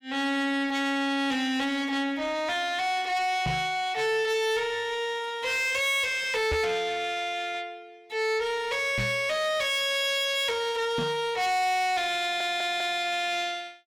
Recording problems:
distortion; soft clipping, signal-to-distortion ratio 10 dB
knock on the microphone; 4 times, first at 3.5 s; peak +1 dB vs average level
audio stuttering; at 12 s

